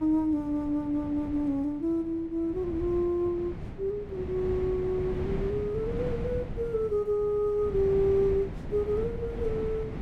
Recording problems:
wind noise; below 260 Hz, SNR 9 dB

